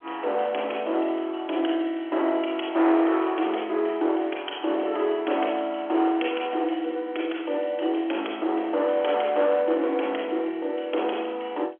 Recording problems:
phone line; 280 Hz to 3.3 kHz, G.711
distorted audio; hard clipping, uneven, signal-to-distortion ratio 13 dB

